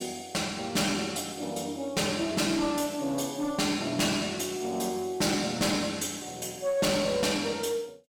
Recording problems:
distortion; hard clipping, uneven, signal-to-distortion ratio 10 dB

